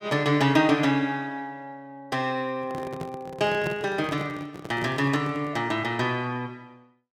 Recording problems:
microphone handling noise; from 2.5 to 5.5 s; peak -1 dB vs average level

